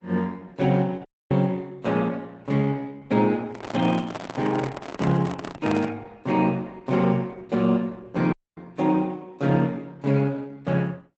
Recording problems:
lossy codec; Opus, log-spectral distance 3 dB, nothing above 7.8 kHz
dropout; at 1 s and at 8.5 s
handling noise; from 3.5 to 6 s; peak +2 dB vs average level

